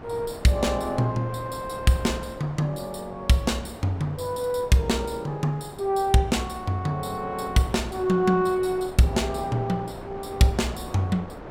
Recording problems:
wind on the microphone; below 850 Hz, SNR 15 dB

